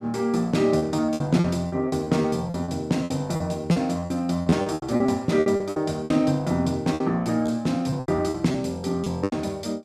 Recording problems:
packet loss; 15% of the sound replaced, filled with repeated pitch periods

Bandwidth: 14.5 kHz